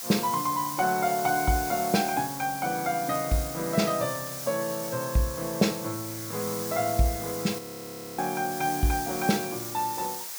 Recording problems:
hiss; SNR 7 dB
audio freezing; at 7.5 s for 0.5 s

